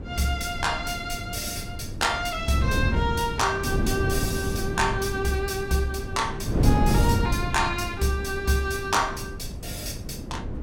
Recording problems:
wind on the microphone; below 240 Hz, SNR 3 dB

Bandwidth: 18 kHz